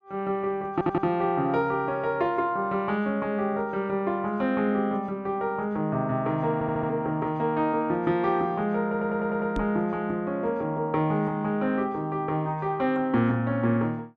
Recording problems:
audio stuttering; at 0.5 s, at 6.5 s and at 9 s
microphone thump; at 9.5 s; peak -2 dB vs average level

